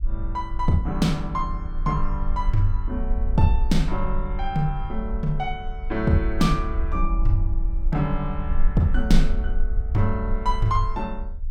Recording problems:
rumble; below 44 Hz, strongest tone 20 Hz, SNR 3 dB

